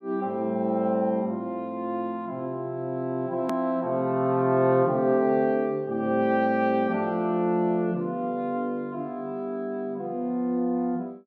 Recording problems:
edit click; at 3.5 s

